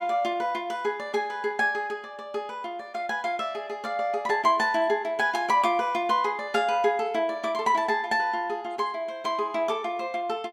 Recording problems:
none

